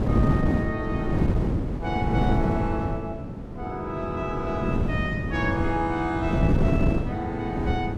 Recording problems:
wind on the microphone; below 270 Hz, SNR -3 dB

